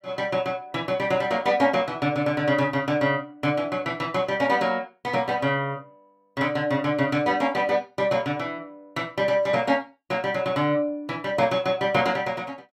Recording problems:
none

